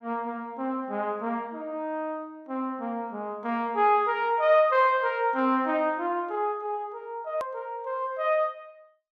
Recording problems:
hard cut with a click; at 7.5 s

